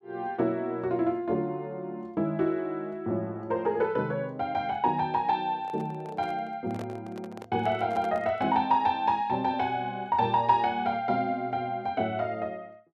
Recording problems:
microphone handling noise; from 5.5 to 8.5 s; peak -8 dB vs average level

